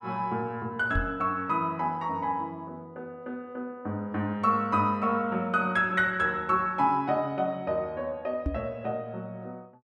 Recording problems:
microphone bump; at 1 s and at 8.5 s; peak +2 dB vs average level

